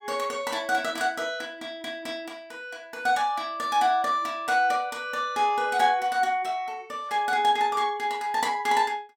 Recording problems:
none

